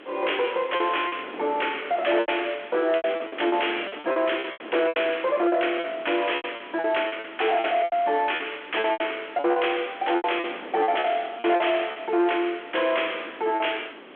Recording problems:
phone line; 220 Hz to 3.4 kHz, G.726
distorted audio; soft clipping, signal-to-distortion ratio 11 dB
hiss; SNR 19 dB
wind on the microphone; below 860 Hz, SNR 19 dB
lost packets; 12% of the sound replaced, filled with repeated pitch periods

